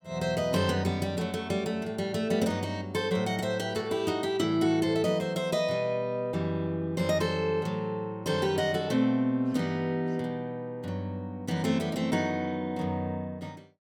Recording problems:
none

